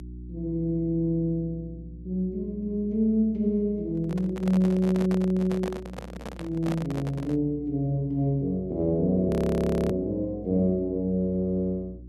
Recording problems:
hum; 60 Hz, harmonics up to 360 Hz, SNR 17 dB
handling noise; from 4 to 7.5 s; peak -3 dB vs average level
audio freezing; at 9.5 s for 0.5 s

